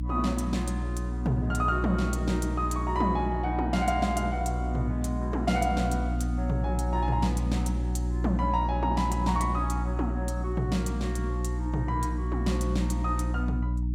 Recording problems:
hum; 60 Hz, harmonics up to 300 Hz, SNR 1 dB

